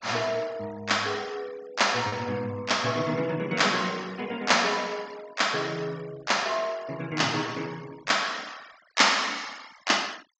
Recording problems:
treble cut off; nothing above 8 kHz
noise reduction artefacts; signal-to-artefact ratio 22 dB
lost packets; 0.4% of the sound replaced, filled with repeated pitch periods

